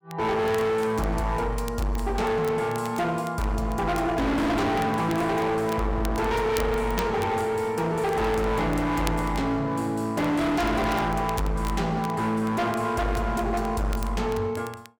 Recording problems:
distorted audio; hard clipping, signal-to-distortion ratio 6 dB
crackling; vinyl, SNR 20 dB

